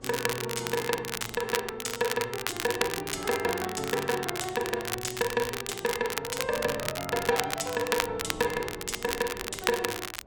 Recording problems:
wind on the microphone; below 520 Hz, SNR 20 dB
crackling; vinyl, SNR 3 dB

